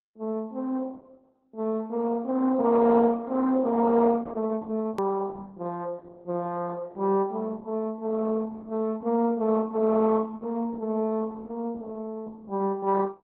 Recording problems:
codec artefacts; Opus, log-spectral distance 2 dB, nothing above 13.1 kHz
edit click; at 5 s

